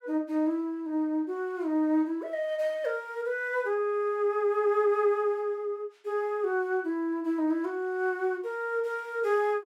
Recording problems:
none

